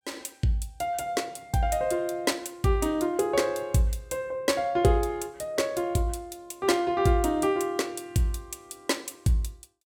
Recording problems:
none

